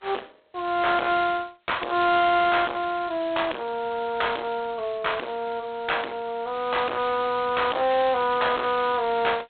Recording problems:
telephone audio; 280 Hz to 3.9 kHz, G.726
distortion; soft clipping, signal-to-distortion ratio 7 dB

